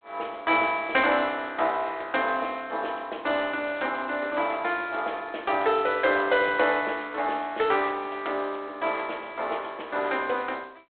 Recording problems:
telephone audio; 340 Hz to 3.7 kHz, G.726

